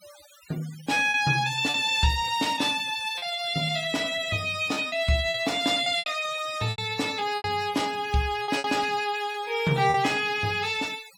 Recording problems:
denoising artefacts; signal-to-artefact ratio 18 dB
packet loss; 6% of the sound replaced, filled with repeated pitch periods

